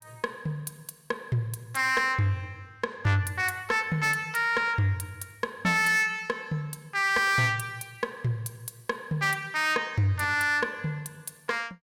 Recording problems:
distortion; soft clipping, signal-to-distortion ratio 11 dB

